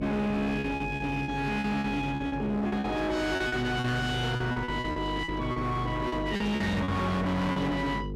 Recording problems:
distortion; hard clipping, signal-to-distortion ratio 7 dB
hum; 50 Hz, harmonics up to 500 Hz, SNR 9 dB
packet loss; 12% of the sound replaced, filled with repeated pitch periods

